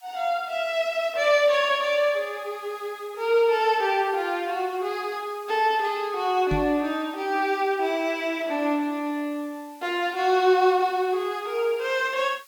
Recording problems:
hiss; SNR 28 dB
microphone thump; at 6.5 s; peak -1 dB vs average level

